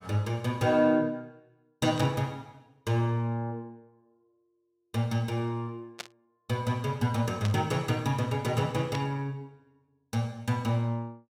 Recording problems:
static burst; 4 times, first at 2 s; peak -3 dB vs average level

